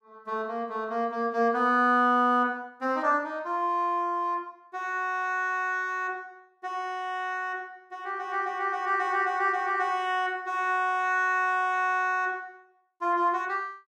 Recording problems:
none

